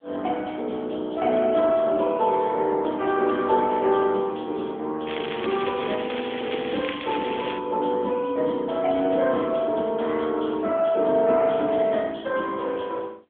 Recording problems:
phone line; 240 Hz to 3.4 kHz, AMR-NB
crackle; from 5 to 7.5 s; loose cable, SNR 10 dB

